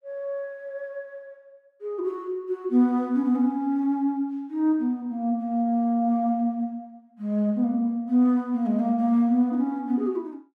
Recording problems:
none

